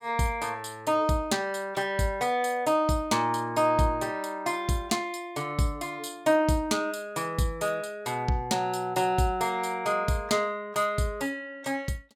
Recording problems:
none

